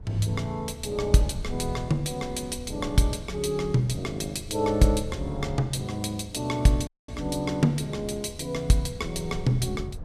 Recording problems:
low-frequency rumble; below 92 Hz, SNR 14 dB
dropout; at 7 s

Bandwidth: 14.5 kHz